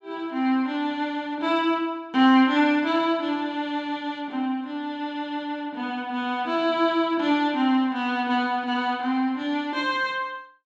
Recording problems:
none

